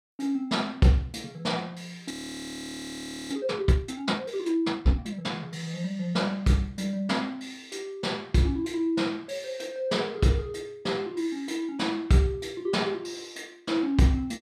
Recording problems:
audio freezing; at 2 s for 1 s

